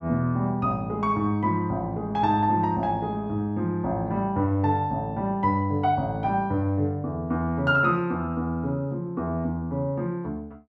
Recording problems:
none

